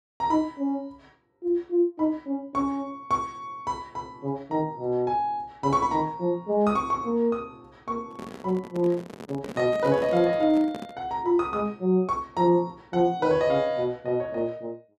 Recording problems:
handling noise; from 8 to 11 s; peak -7 dB vs average level

